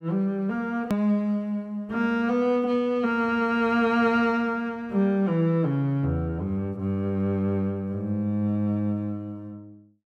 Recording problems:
click at an edit; at 1 s

